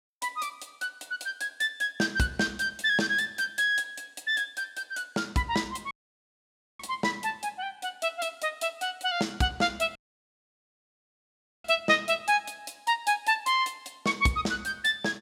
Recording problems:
dropout; at 6 s for 1 s and at 10 s for 1.5 s

